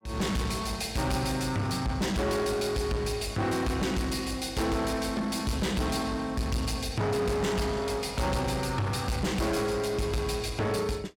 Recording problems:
distortion; soft clipping, signal-to-distortion ratio 8 dB

